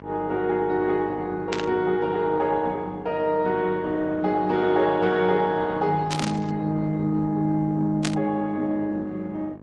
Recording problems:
lossy compression; MP3, then Opus, log-spectral distance 2 dB
electrical hum; 50 Hz, harmonics up to 1.8 kHz, SNR 18 dB
static burst; at 1.5 s, at 6 s and at 8 s; peak 0 dB vs average level

